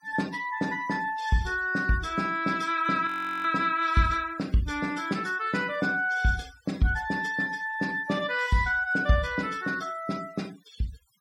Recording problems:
denoising artefacts; signal-to-artefact ratio 21 dB
frozen audio; at 3 s

